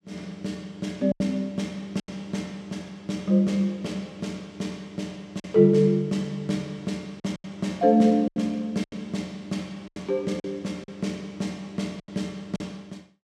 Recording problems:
packet loss; 6% of the sound replaced, filled with silence

